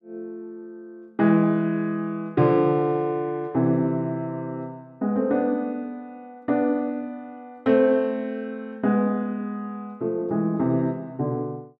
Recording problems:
none

